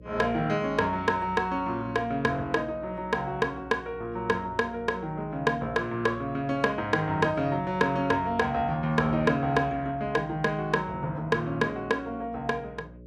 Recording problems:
hum; 60 Hz, harmonics up to 600 Hz, SNR 20 dB

